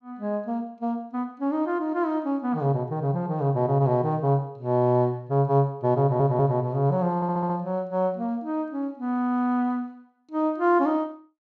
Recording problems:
audio stuttering; at 6 s and at 7 s

